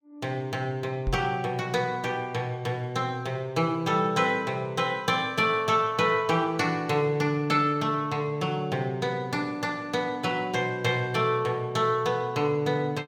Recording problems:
microphone bump; at 1 s; peak -1 dB vs average level

